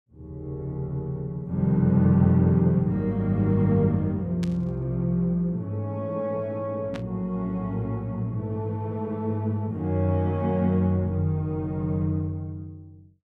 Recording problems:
static burst; at 4.5 s and at 7 s; peak -10 dB vs average level

